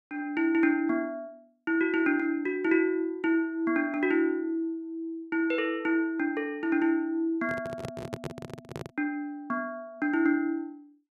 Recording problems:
handling noise; from 7.5 to 9 s; peak -3 dB vs average level

